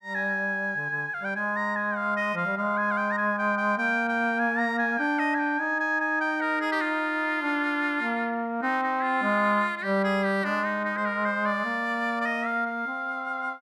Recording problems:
none

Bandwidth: 14.5 kHz